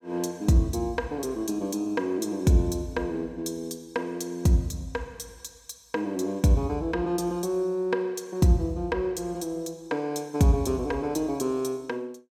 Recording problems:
none

